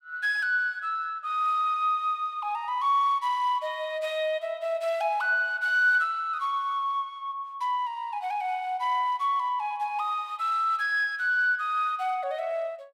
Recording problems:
none

